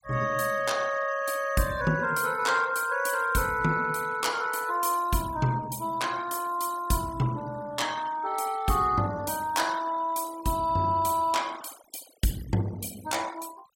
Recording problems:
noise reduction artefacts; signal-to-artefact ratio 19 dB

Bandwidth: 17.5 kHz